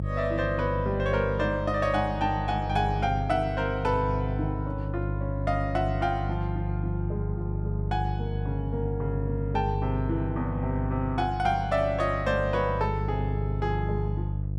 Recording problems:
electrical hum; 50 Hz, harmonics up to 500 Hz, SNR 2 dB

